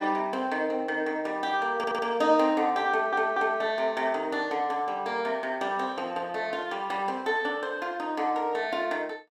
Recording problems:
audio stuttering; at 2 s and at 3 s

